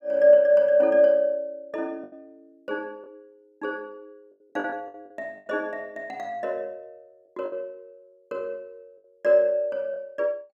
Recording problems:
packet loss; 4% of the sound replaced, filled with the last packet

